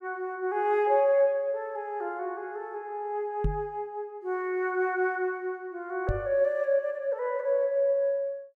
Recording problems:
microphone thump; at 3.5 s and at 6 s; peak +3 dB vs average level

